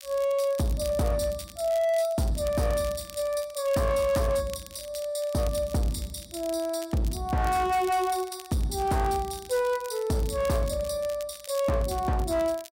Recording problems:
distortion; hard clipping, signal-to-distortion ratio 11 dB
crackling; vinyl, SNR 18 dB

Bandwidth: 16 kHz